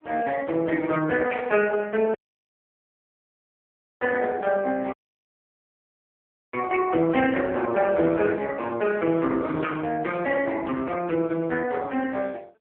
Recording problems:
phone line; 190 Hz to 3.2 kHz, AMR-NB
dropout; at 2 s for 2 s and at 5 s for 1.5 s

